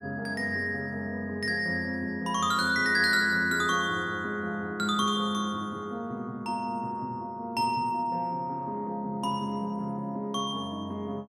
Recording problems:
none

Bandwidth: 16 kHz